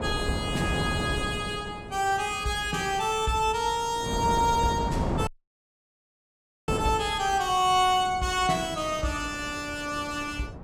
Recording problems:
wind noise; below 520 Hz, SNR 8 dB
audio cutting out; at 5.5 s for 1.5 s

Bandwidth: 17 kHz